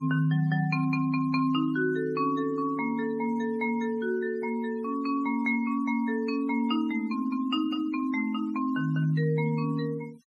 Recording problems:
noise reduction artefacts; signal-to-artefact ratio 24 dB

